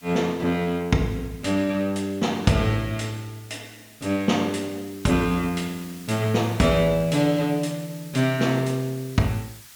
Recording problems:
hiss; slope +3 dB per octave, SNR 21 dB

